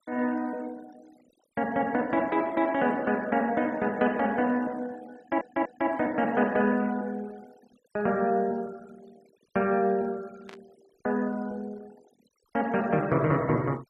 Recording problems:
noise reduction artefacts; signal-to-artefact ratio 26 dB
stutter; at 5 s
static burst; at 10 s; peak -14 dB vs average level

